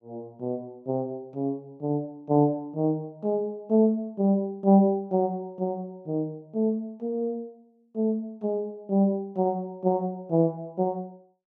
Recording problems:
none

